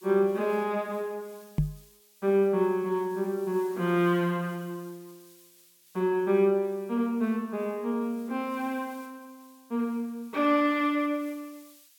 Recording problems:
hiss; slope +5 dB per octave, SNR 27 dB
microphone bump; at 1.5 s; peak +5 dB vs average level

